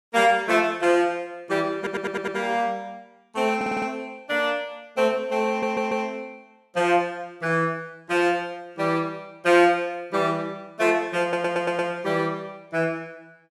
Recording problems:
stutter; 4 times, first at 2 s

